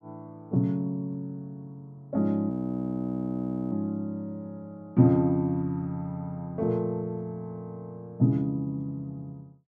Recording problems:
audio freezing; at 2.5 s for 1 s

